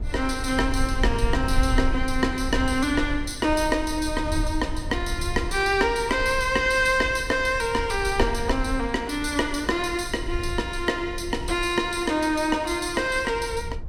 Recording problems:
low-frequency rumble; below 66 Hz, SNR 9 dB

